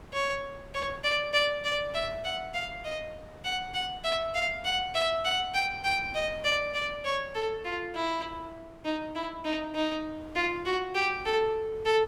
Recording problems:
wind on the microphone; below 860 Hz, SNR 20 dB

